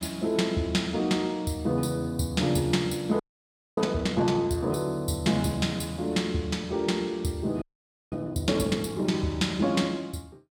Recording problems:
audio freezing; at 3 s for 0.5 s and at 7.5 s

